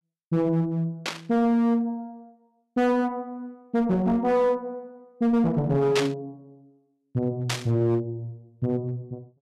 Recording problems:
distortion; hard clipping, uneven, signal-to-distortion ratio 11 dB
static burst; at 1 s, at 6 s and at 7.5 s; peak +2 dB vs average level

